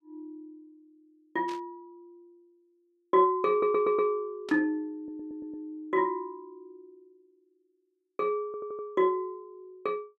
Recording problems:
static burst; at 1.5 s and at 4.5 s; peak -10 dB vs average level
stutter; at 3.5 s, at 5 s and at 8.5 s

